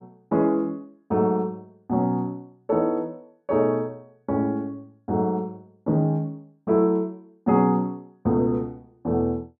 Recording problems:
none

